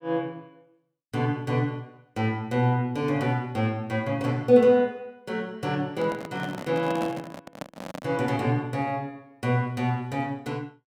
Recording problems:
microphone handling noise; from 6 to 8 s; peak -2 dB vs average level

